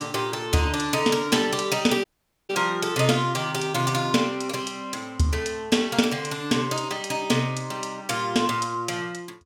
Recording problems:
audio cutting out; at 2 s

